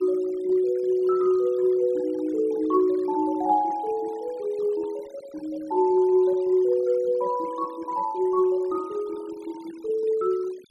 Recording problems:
denoising artefacts; signal-to-artefact ratio 26 dB

